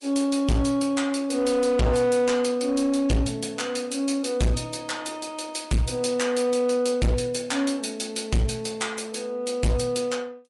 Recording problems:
codec artefacts; MP3, log-spectral distance 4 dB, nothing above 11 kHz
distorted audio; hard clipping, signal-to-distortion ratio 6 dB

